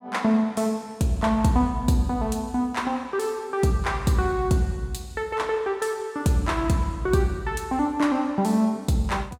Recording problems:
none

